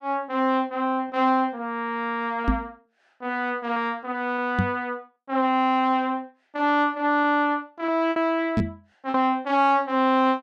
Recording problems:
lost packets; 3% of the sound replaced, filled with repeated pitch periods
knock on the microphone; at 2.5 s, at 4.5 s and at 8.5 s; peak +5 dB vs average level

